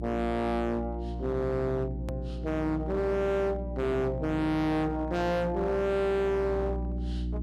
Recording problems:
distorted audio; hard clipping, signal-to-distortion ratio 7 dB
electrical hum; 60 Hz, harmonics up to 360 Hz, SNR 7 dB
hard cut with a click; at 2 s

